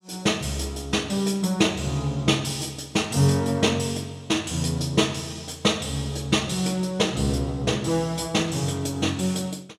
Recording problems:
none

